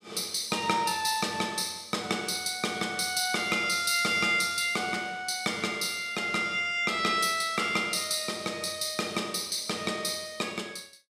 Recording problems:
none

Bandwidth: 15 kHz